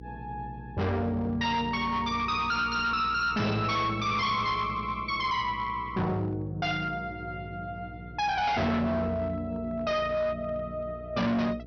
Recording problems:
low-pass filter; nothing above 6 kHz
distorted audio; hard clipping, signal-to-distortion ratio 7 dB
hum; 60 Hz, harmonics up to 480 Hz, SNR 16 dB

